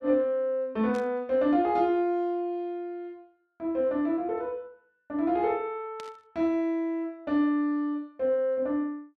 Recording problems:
burst of static; at 1 s and at 6 s; peak -12 dB vs average level

